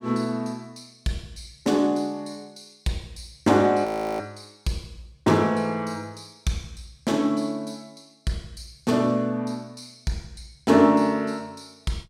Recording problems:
frozen audio; at 4 s

